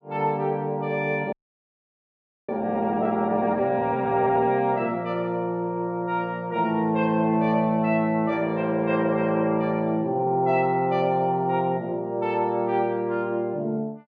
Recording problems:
audio freezing; at 1.5 s for 1 s

